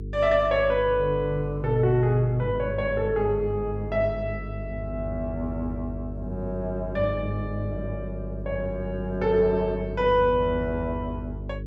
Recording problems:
hum; 50 Hz, harmonics up to 450 Hz, SNR 9 dB

